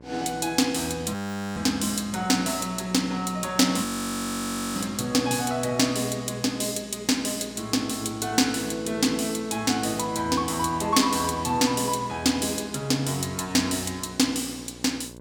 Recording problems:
mains hum; 60 Hz, harmonics up to 1.6 kHz, SNR 21 dB
frozen audio; at 1 s and at 4 s for 1 s

